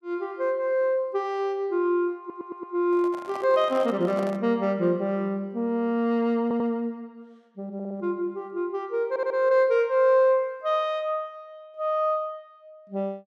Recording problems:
stutter; 4 times, first at 2 s
microphone handling noise; from 3 to 4.5 s; peak -9 dB vs average level

